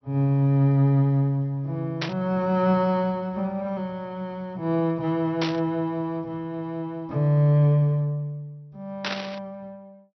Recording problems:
treble cut off; nothing above 5.9 kHz
static burst; at 2 s, at 5.5 s and at 9 s; peak 0 dB vs average level

